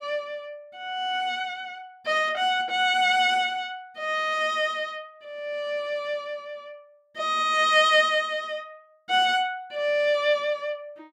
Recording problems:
none

